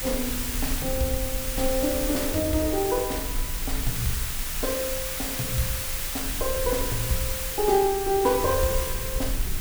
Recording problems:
background hiss; slope +1 dB per octave, SNR 2 dB
rumble; below 60 Hz, SNR 9 dB

